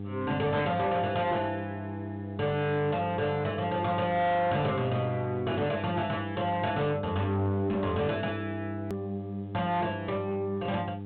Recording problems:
treble missing; nothing above 4 kHz
distorted audio; hard clipping, signal-to-distortion ratio 12 dB
hum; 50 Hz, harmonics up to 800 Hz, SNR 8 dB
hiss; SNR 40 dB
hard cut with a click; at 9 s

